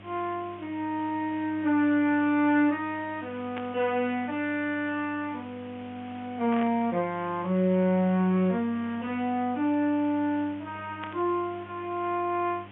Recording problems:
low-pass filter; nothing above 3.3 kHz
electrical hum; 50 Hz, harmonics up to 700 Hz, SNR 21 dB
hiss; SNR 22 dB
burst of static; at 3.5 s, at 6.5 s and at 11 s; peak -7 dB vs average level

